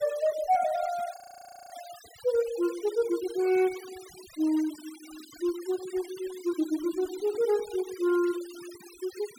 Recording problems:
noise reduction artefacts; signal-to-artefact ratio 18 dB
frozen audio; at 1 s for 0.5 s

